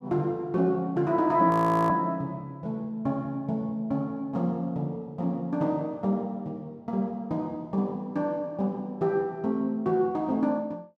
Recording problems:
frozen audio; at 1.5 s

